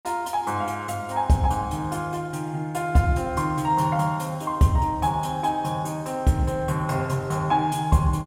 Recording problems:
none

